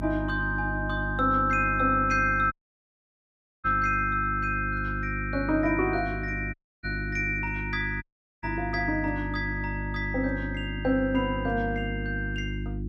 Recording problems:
hum; 50 Hz, harmonics up to 350 Hz, SNR 6 dB
audio cutting out; at 2.5 s for 1 s, at 6.5 s and at 8 s

